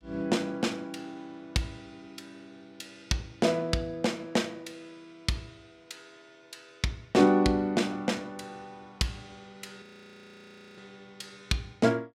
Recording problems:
audio freezing; at 10 s for 1 s

